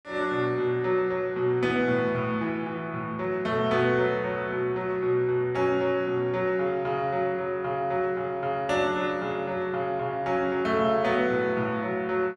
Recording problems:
none

